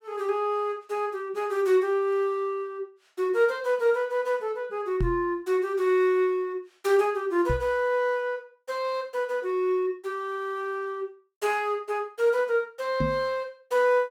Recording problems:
microphone thump; at 5 s, at 7.5 s and at 13 s; peak +1 dB vs average level

